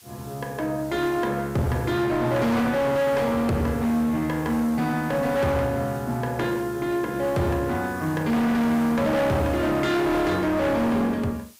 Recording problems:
distortion; hard clipping, uneven, signal-to-distortion ratio 7 dB
background hiss; slope +2 dB per octave, SNR 23 dB

